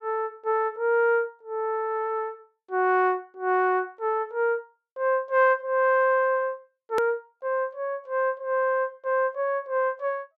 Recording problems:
click at an edit; at 7 s

